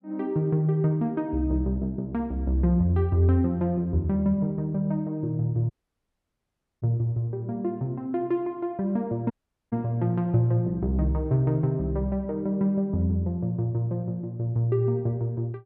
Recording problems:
dropout; at 5.5 s for 1 s and at 9.5 s

